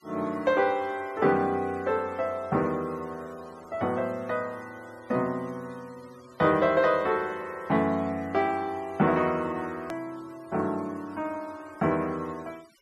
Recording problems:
noise reduction artefacts; signal-to-artefact ratio 26 dB
edit click; at 10 s

